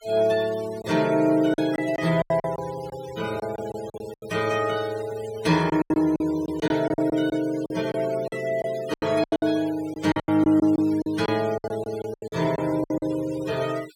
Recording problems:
noise reduction artefacts; signal-to-artefact ratio 18 dB
lost packets; 13% of the sound replaced, filled with silence

